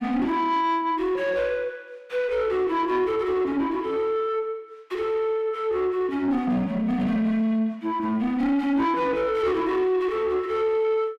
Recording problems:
distortion; soft clipping, signal-to-distortion ratio 10 dB

